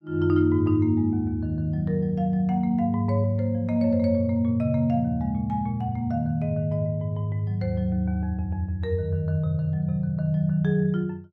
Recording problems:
none

